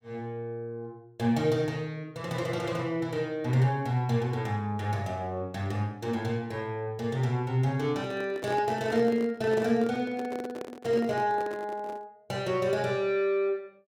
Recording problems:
handling noise; from 8 to 12 s; peak -5 dB vs average level

